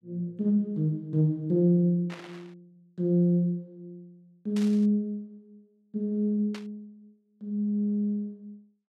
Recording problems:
burst of static; at 2 s, at 4.5 s and at 6.5 s; peak -11 dB vs average level

